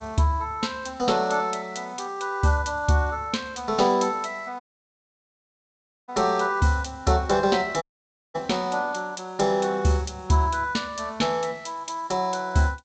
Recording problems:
lossy compression; G.722, log-spectral distance 3 dB, nothing above 7.3 kHz
audio cutting out; at 4.5 s for 1.5 s and at 8 s for 0.5 s

